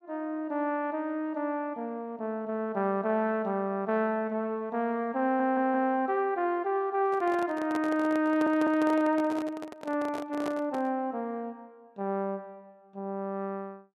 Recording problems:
stutter; at 5 s and at 8.5 s
handling noise; from 7 to 11 s; peak -3 dB vs average level

